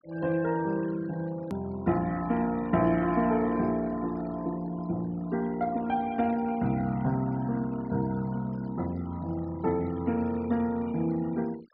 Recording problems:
treble cut off; nothing above 5.5 kHz
denoising artefacts; signal-to-artefact ratio 22 dB
edit click; at 1.5 s

